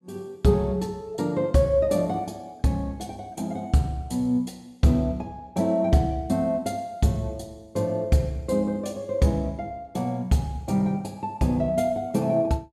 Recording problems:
none

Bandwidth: 15 kHz